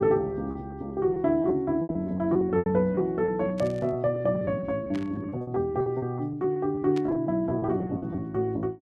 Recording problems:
packet loss; 14% of the sound replaced, filled with repeated pitch periods
static burst; at 3.5 s, at 5 s and at 7 s; peak -11 dB vs average level

